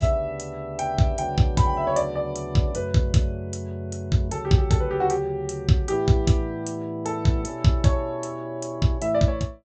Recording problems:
treble missing; nothing above 8 kHz

